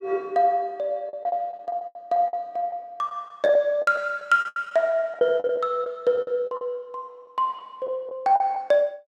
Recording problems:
lost packets; 11% of the sound replaced, filled with the last packet

